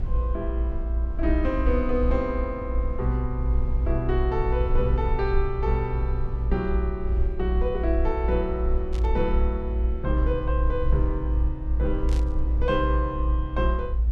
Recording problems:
rumble; below 60 Hz, strongest tone 56 Hz, SNR -2 dB
static burst; at 9 s and at 12 s; peak -9 dB vs average level

